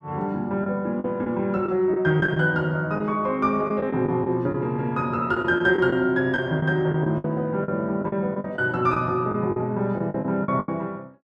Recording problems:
lost packets; 9% of the sound replaced, filled with the last packet

